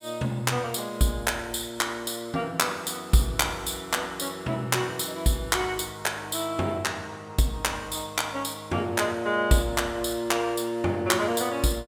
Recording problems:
none

